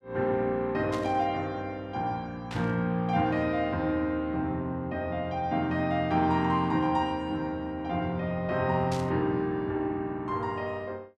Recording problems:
burst of static; at 1 s, at 2.5 s and at 9 s; peak -7 dB vs average level

